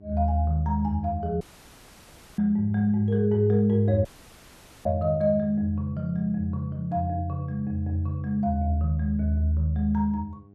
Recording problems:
hum; 50 Hz, harmonics up to 800 Hz, SNR 26 dB
dropout; at 1.5 s for 1 s and at 4 s for 1 s

